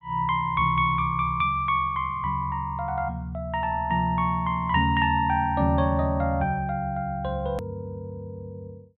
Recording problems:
treble cut off; nothing above 4 kHz
hard cut with a click; at 7.5 s

